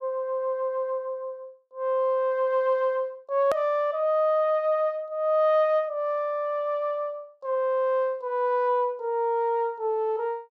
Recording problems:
edit click; at 3.5 s

